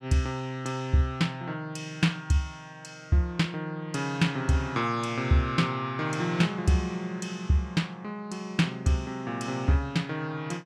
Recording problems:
none

